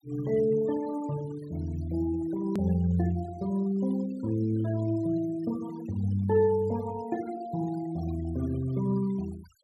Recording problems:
noise reduction artefacts; signal-to-artefact ratio 21 dB
edit click; at 2.5 s

